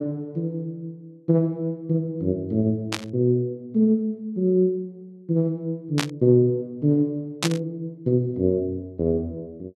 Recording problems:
burst of static; at 3 s, at 6 s and at 7.5 s; peak +3 dB vs average level

